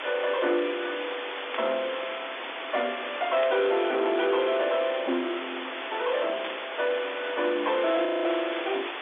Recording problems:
telephone audio; 240 Hz to 3.6 kHz, G.711
distorted audio; hard clipping, signal-to-distortion ratio 11 dB
background hiss; SNR 7 dB
static burst; at 1.5 s, at 3.5 s and at 6.5 s; peak -3 dB vs average level
audio freezing; at 8 s

